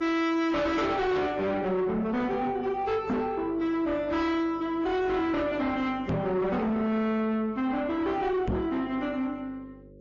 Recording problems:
codec artefacts; AAC, then MP3, log-spectral distance 2 dB, nothing above 6.5 kHz
distorted audio; soft clipping, signal-to-distortion ratio 8 dB
electrical hum; 50 Hz, harmonics up to 550 Hz, SNR 22 dB
microphone bump; at 3 s, at 6 s and at 8.5 s; peak +3 dB vs average level

